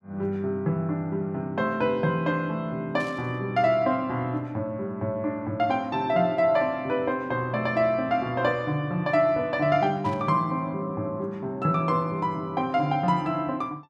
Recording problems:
burst of static; at 3 s and at 10 s; peak -14 dB vs average level

